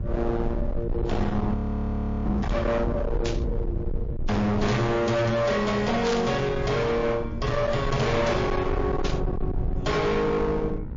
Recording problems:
lossy codec; MP3, log-spectral distance 2 dB, nothing above 6 kHz
distortion; hard clipping, uneven, signal-to-distortion ratio 5 dB
electrical hum; 60 Hz, harmonics up to 1.5 kHz, SNR 21 dB
low-frequency rumble; below 160 Hz, SNR 6 dB
audio freezing; at 1.5 s for 0.5 s
static burst; at 3.5 s, at 6 s and at 9 s; peak -4 dB vs average level

